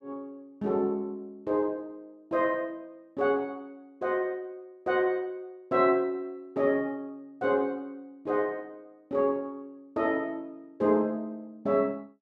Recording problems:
none

